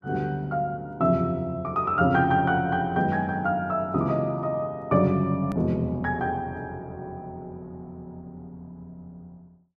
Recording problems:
edit click; at 5.5 s

